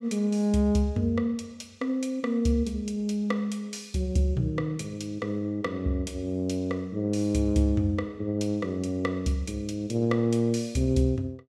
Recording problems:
none

